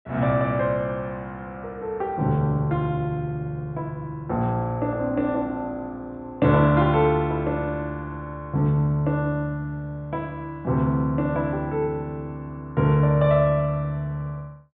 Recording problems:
treble missing; nothing above 4 kHz

